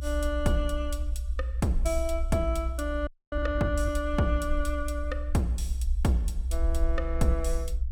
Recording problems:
rumble; below 62 Hz, SNR 1 dB
frozen audio; at 3 s

